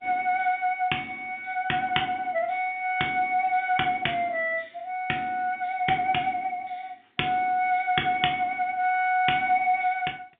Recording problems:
telephone audio; 170 Hz to 3.6 kHz, G.711

